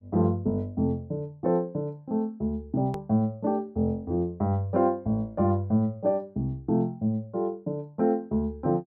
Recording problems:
click at an edit; at 3 s

